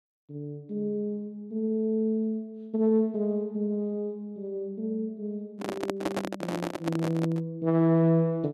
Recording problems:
microphone handling noise; from 5.5 to 7.5 s; peak +3 dB vs average level

